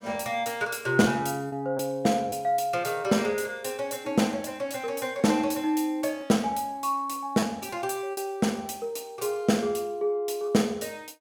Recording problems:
lost packets; 2% of the sound replaced, filled with repeated pitch periods

